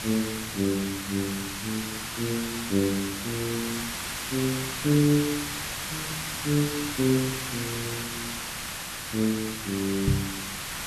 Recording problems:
background hiss; slope 0 dB per octave, SNR 3 dB
microphone bump; at 10 s; peak +8 dB vs average level

